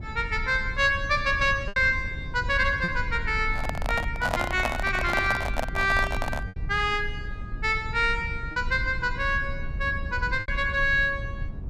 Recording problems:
low-frequency rumble; below 92 Hz, SNR 9 dB
lost packets; 3% of the sound replaced, filled with repeated pitch periods
handling noise; from 3.5 to 6.5 s; peak +3 dB vs average level

